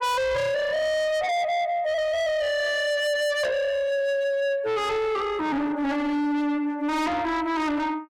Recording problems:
distorted audio; soft clipping, signal-to-distortion ratio 6 dB

